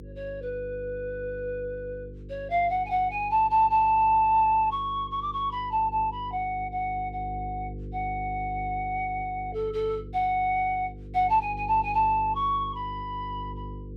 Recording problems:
hum; 50 Hz, harmonics up to 500 Hz, SNR 14 dB

